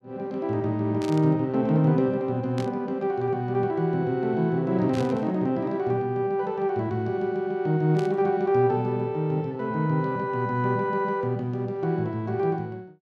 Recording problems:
burst of static; 4 times, first at 1 s; peak -10 dB vs average level

